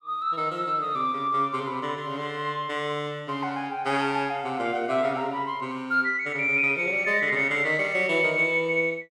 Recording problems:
none

